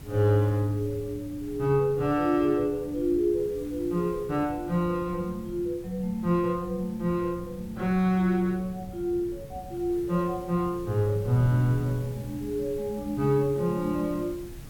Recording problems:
background hiss; slope -3 dB per octave, SNR 25 dB
wind noise; below 180 Hz, SNR 16 dB

